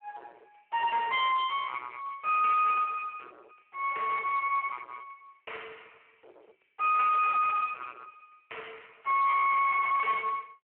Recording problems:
phone line; 320 Hz to 2.5 kHz, Speex
distorted audio; hard clipping, signal-to-distortion ratio 6 dB

